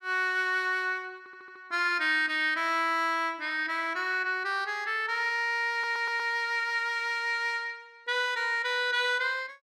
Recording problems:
audio stuttering; at 1 s and at 5.5 s

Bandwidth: 14.5 kHz